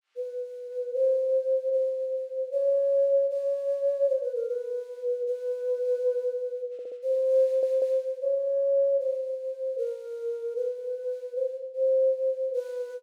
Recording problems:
stutter; at 6.5 s and at 7.5 s

